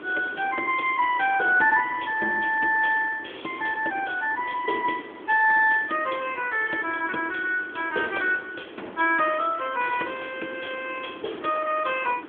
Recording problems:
phone line; 280 Hz to 3.4 kHz, AMR-NB
hiss; SNR 18 dB

